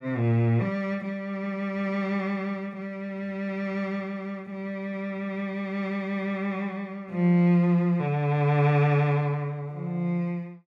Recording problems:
none

